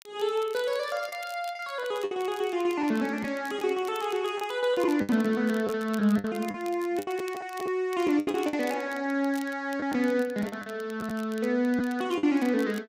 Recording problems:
crackle; vinyl, SNR 21 dB
lost packets; 7% of the sound replaced, filled with the last packet

